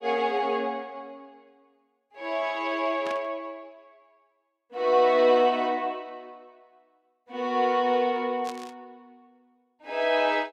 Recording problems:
static burst; at 3 s and at 8.5 s; peak -10 dB vs average level

